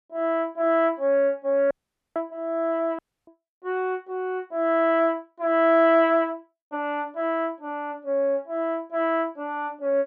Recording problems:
audio cutting out; at 1.5 s and at 3 s

